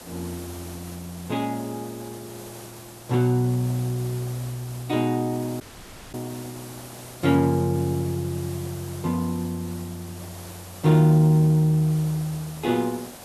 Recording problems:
hiss; SNR 17 dB
dropout; at 5.5 s for 0.5 s

